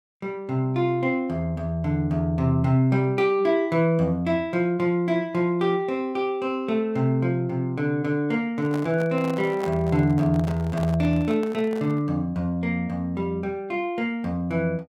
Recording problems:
microphone handling noise; from 8.5 to 12 s; peak -6 dB vs average level

